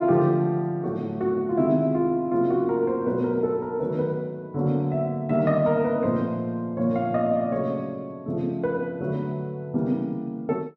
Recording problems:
none

